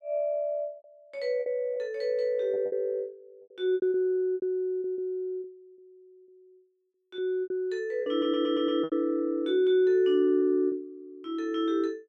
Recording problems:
lost packets; 9% of the sound replaced, filled with repeated pitch periods
audio stuttering; at 8 s

